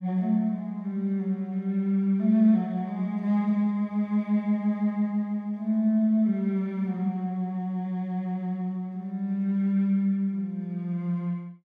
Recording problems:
none

